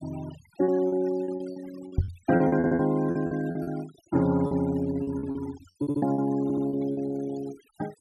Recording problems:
noise reduction artefacts; signal-to-artefact ratio 19 dB
lost packets; 13% of the sound replaced, filled with repeated pitch periods
knock on the microphone; at 2 s; peak +6 dB vs average level
stutter; at 2.5 s, at 6 s and at 6.5 s

